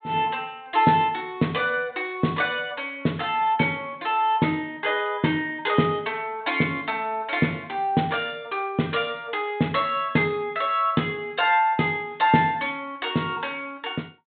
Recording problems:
treble missing; nothing above 4 kHz

